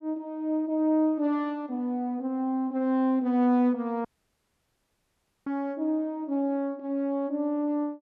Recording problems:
dropout; at 4 s for 1.5 s

